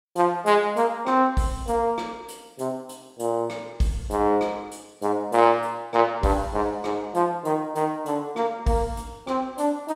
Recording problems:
none

